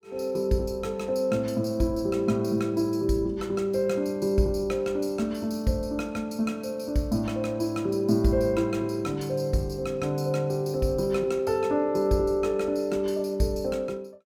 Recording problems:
none

